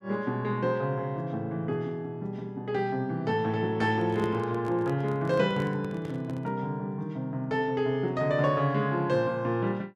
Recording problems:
microphone handling noise; from 4 to 6.5 s; peak -5 dB vs average level

